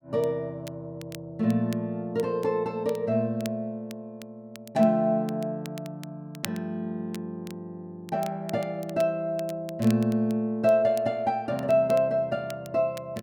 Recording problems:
crackling; vinyl, SNR 21 dB

